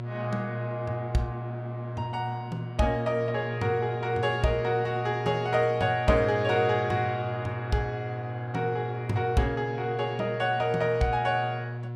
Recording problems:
hum; 60 Hz, harmonics up to 960 Hz, SNR 7 dB

